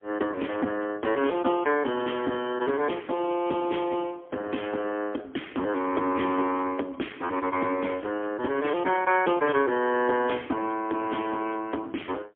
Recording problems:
telephone audio; 240 Hz to 3.3 kHz, AMR-NB, then MP3

